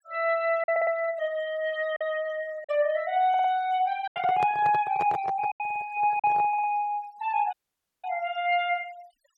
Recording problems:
noise reduction artefacts; signal-to-artefact ratio 22 dB
packet loss; 4% of the sound replaced, filled with silence
audio stuttering; 4 times, first at 0.5 s
microphone handling noise; from 4 to 6.5 s; peak -3 dB vs average level
audio cutting out; at 7.5 s

